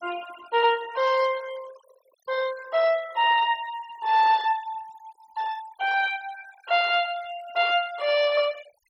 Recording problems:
noise reduction artefacts; signal-to-artefact ratio 20 dB

